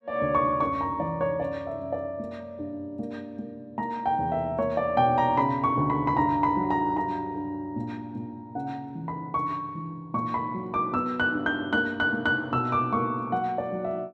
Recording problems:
none

